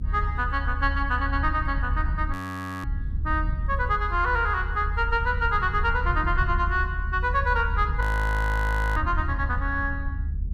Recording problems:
rumble; below 74 Hz, SNR 3 dB
frozen audio; at 2.5 s for 0.5 s and at 8 s for 1 s

